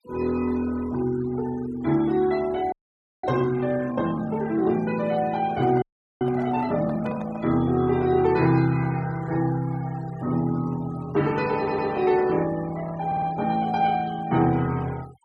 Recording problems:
denoising artefacts; signal-to-artefact ratio 21 dB
frozen audio; at 2.5 s for 0.5 s and at 6 s
handling noise; from 5.5 to 7.5 s; peak -10 dB vs average level
audio stuttering; at 12 s and at 13 s

